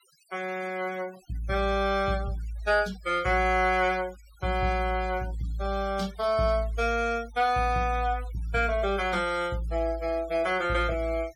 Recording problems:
noise reduction artefacts; signal-to-artefact ratio 21 dB

